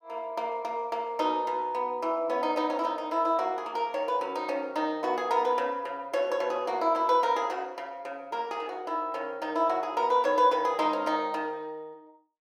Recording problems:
none

